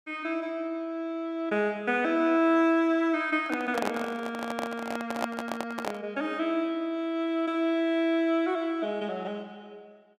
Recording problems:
handling noise; from 3.5 to 6 s; peak +3 dB vs average level

